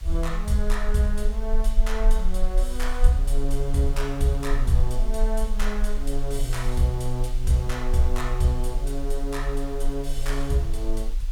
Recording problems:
hiss; slope -1 dB per octave, SNR 21 dB
rumble; below 36 Hz, strongest tone 22 Hz, SNR 1 dB

